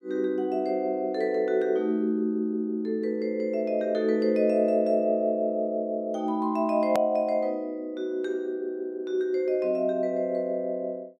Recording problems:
edit click; at 7 s

